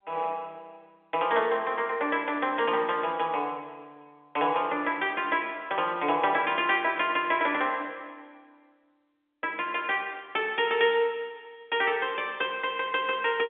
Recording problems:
phone line; 260 Hz to 3.5 kHz, G.711

